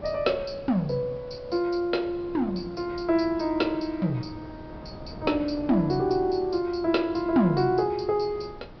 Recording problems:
treble missing; nothing above 5.5 kHz
hiss; SNR 30 dB
wind noise; below 490 Hz, SNR 18 dB

